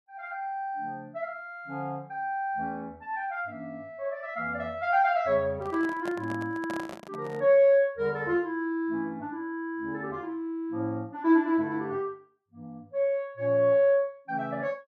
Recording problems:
microphone handling noise; from 5.5 to 7.5 s; peak -5 dB vs average level

